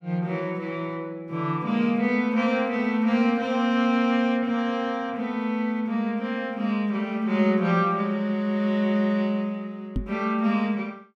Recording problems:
microphone bump; at 10 s; peak 0 dB vs average level

